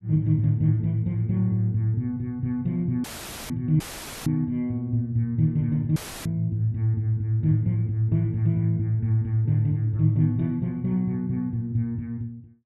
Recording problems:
dropout; at 3 s, at 4 s and at 6 s; filled with static

